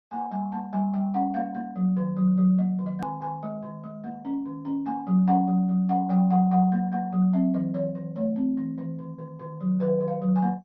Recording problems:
lossy compression; MP2, log-spectral distance 2 dB, nothing above 13.1 kHz
hard cut with a click; at 3 s

